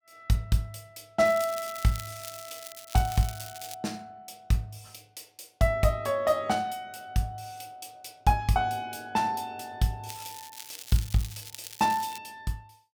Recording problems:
crackling; from 1 to 3.5 s and from 10 to 12 s; loose cable, SNR 13 dB

